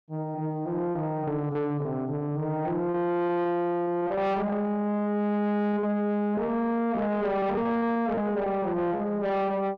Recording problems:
distorted audio; soft clipping, signal-to-distortion ratio 11 dB
packet loss; 7% of the sound replaced, filled with repeated pitch periods

